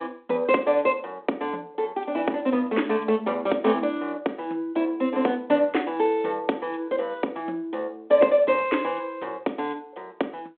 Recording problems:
telephone audio; 240 Hz to 3.5 kHz, G.726

